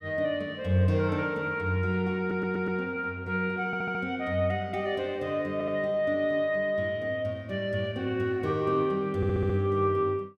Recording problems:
audio stuttering; 4 times, first at 2 s

